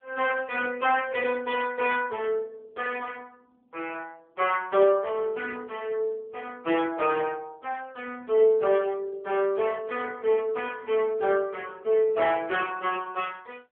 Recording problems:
phone line; 340 Hz to 3.3 kHz, AMR-NB

